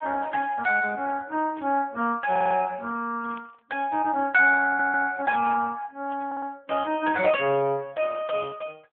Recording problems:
telephone audio; 300 Hz to 3.3 kHz, AMR-NB
burst of static; at 1.5 s, at 3 s and at 6 s; peak -20 dB vs average level
audio stuttering; at 2.5 s, at 4.5 s and at 6.5 s

